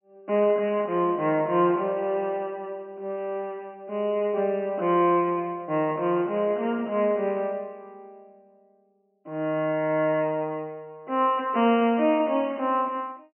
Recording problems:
treble missing; nothing above 3 kHz

